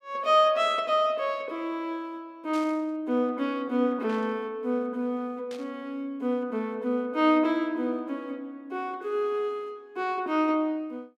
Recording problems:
static burst; at 2.5 s, at 4 s and at 5.5 s; peak -12 dB vs average level

